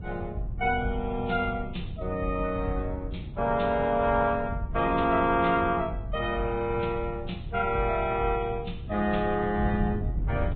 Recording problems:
low-pass filter; nothing above 3.7 kHz
lossy codec; Vorbis, log-spectral distance 2 dB
wind on the microphone; below 130 Hz, SNR 10 dB

